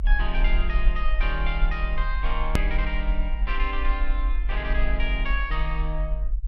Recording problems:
low-frequency rumble; below 46 Hz, SNR -3 dB
click at an edit; at 2.5 s

